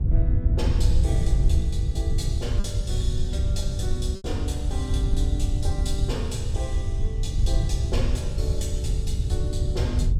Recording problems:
wind on the microphone; below 90 Hz, SNR -8 dB
lost packets; 1.2% of the sound replaced, filled with repeated pitch periods

